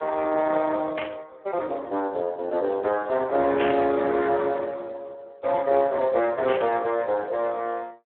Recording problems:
telephone audio; 190 Hz to 3.9 kHz, Speex
static burst; at 1 s, at 3.5 s and at 6.5 s; peak -2 dB vs average level

